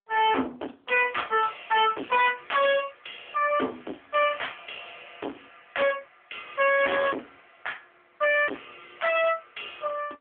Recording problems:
phone line; 240 Hz to 3.3 kHz, AMR-NB
distorted audio; hard clipping, signal-to-distortion ratio 3 dB

